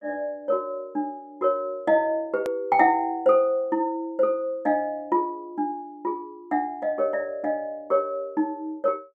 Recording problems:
edit click; at 2.5 s

